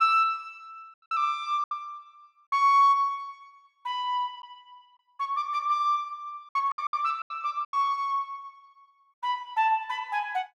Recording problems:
lost packets; 6% of the sound replaced, filled with silence

